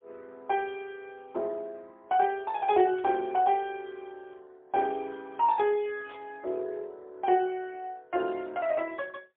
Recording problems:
telephone audio; 300 Hz to 3.6 kHz, AMR-NB, then MP3
burst of static; at 3 s and at 6 s; peak -17 dB vs average level

